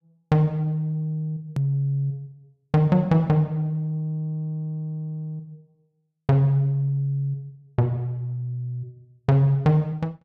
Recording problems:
click at an edit; at 1.5 s

